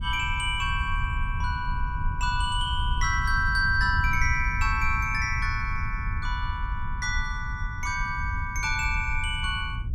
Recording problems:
wind noise; below 84 Hz, SNR 4 dB

